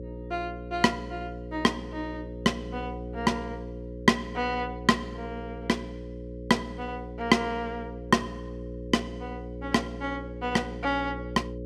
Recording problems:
hum; 60 Hz, harmonics up to 540 Hz, SNR 9 dB

